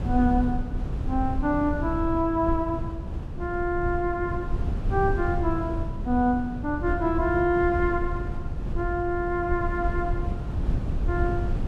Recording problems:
wind on the microphone; below 120 Hz, SNR 4 dB

